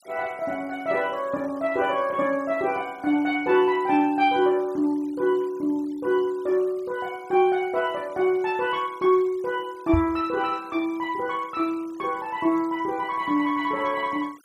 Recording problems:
noise reduction artefacts; signal-to-artefact ratio 26 dB
microphone bump; at 10 s; peak +3 dB vs average level

